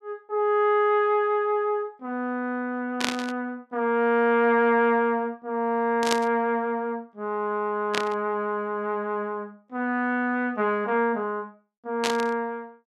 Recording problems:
static burst; 4 times, first at 3 s; peak +4 dB vs average level

